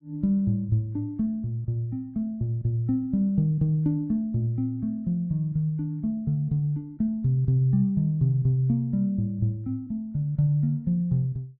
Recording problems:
none

